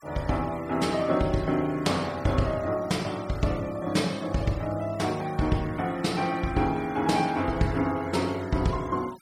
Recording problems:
denoising artefacts; signal-to-artefact ratio 21 dB

